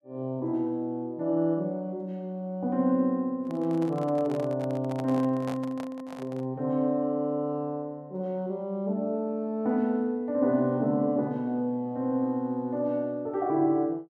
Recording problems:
handling noise; from 3.5 to 6.5 s; peak -7 dB vs average level

